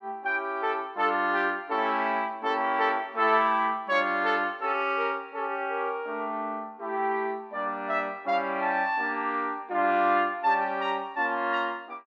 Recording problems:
none

